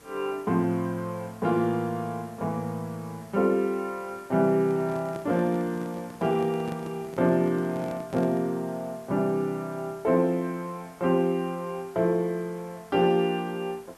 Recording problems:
background hiss; slope -4 dB per octave, SNR 24 dB
handling noise; from 4.5 to 8.5 s; peak -6 dB vs average level

